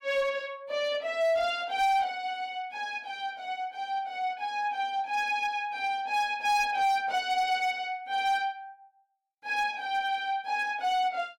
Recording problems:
distortion; hard clipping, signal-to-distortion ratio 11 dB

